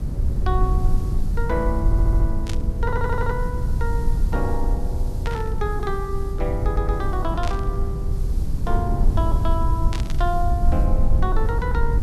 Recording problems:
background hiss; slope +6 dB per octave, SNR 21 dB
rumble; below 74 Hz, SNR -5 dB
audio stuttering; at 2 s, at 3 s and at 6.5 s
static burst; 4 times, first at 2.5 s; peak -1 dB vs average level

